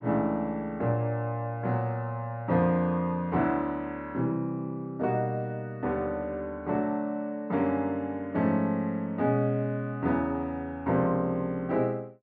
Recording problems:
none

